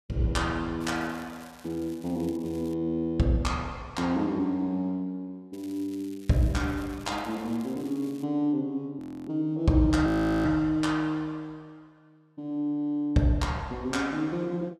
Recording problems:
crackle; from 1 to 2.5 s and from 5.5 to 8 s; loose cable, SNR 24 dB
audio freezing; at 9 s and at 10 s

